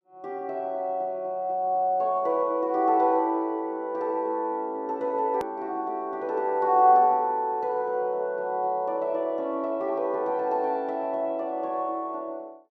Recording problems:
edit click; at 5.5 s

